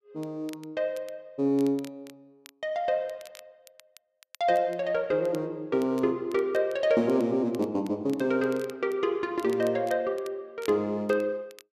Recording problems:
crackling; vinyl, SNR 25 dB

